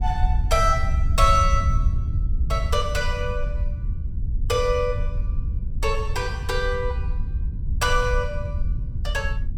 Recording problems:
wind noise; below 78 Hz, SNR 1 dB

